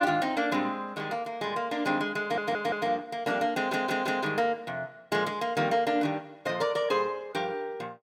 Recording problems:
audio stuttering; at 2 s and at 3.5 s

